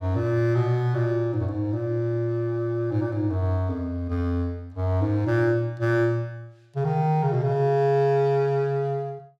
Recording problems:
none

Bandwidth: 14.5 kHz